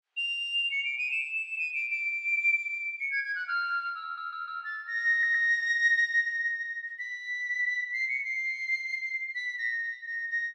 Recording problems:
audio stuttering; at 4 s and at 5 s

